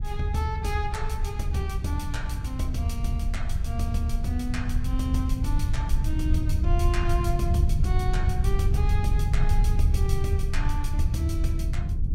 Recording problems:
low-frequency rumble; below 88 Hz, SNR -4 dB

